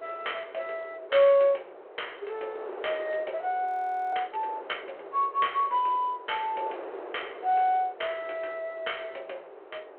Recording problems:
telephone audio; 340 Hz to 3.2 kHz, G.726
wind on the microphone; below 800 Hz, SNR 15 dB
audio freezing; at 3.5 s

